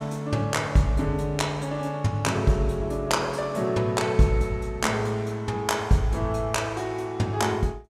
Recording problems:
none

